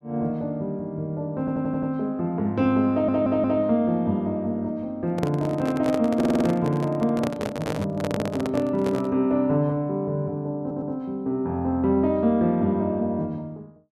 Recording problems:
stutter; 4 times, first at 1.5 s
handling noise; from 5 to 9 s; peak -1 dB vs average level

